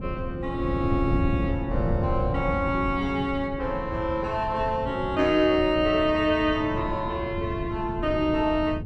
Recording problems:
wind noise; below 170 Hz, SNR 7 dB

